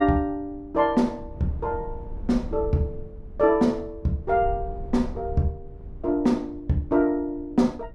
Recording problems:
rumble; below 80 Hz, SNR 14 dB

